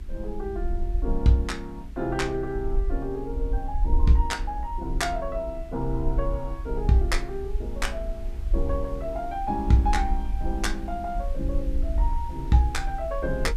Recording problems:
hum; 50 Hz, harmonics up to 400 Hz, SNR 23 dB
hiss; slope -3 dB per octave, SNR 26 dB
low-frequency rumble; below 50 Hz, SNR 4 dB

